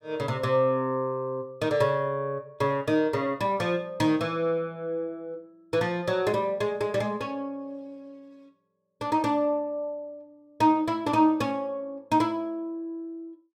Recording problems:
none

